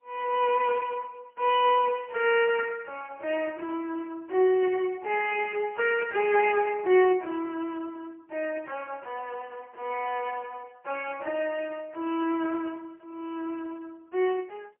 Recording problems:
phone line; 340 Hz to 3.1 kHz, AMR-NB, then MP3

